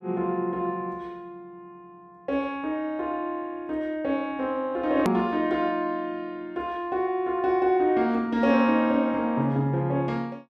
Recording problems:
click at an edit; at 5 s

